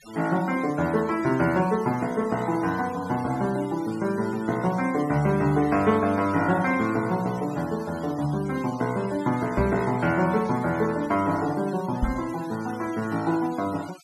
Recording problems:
denoising artefacts; signal-to-artefact ratio 18 dB
knock on the microphone; at 9.5 s and at 12 s; peak +3 dB vs average level

